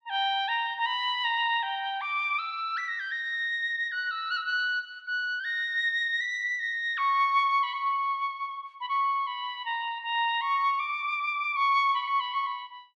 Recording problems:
none

